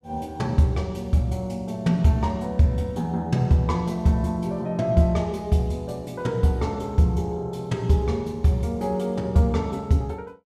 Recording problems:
none

